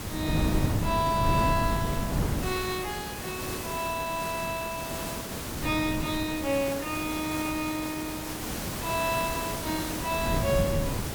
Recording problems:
background hiss; slope -4 dB per octave, SNR 4 dB
wind on the microphone; below 250 Hz, SNR 1 dB

